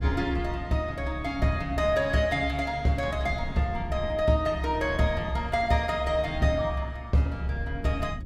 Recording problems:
wind noise; below 160 Hz, SNR 13 dB

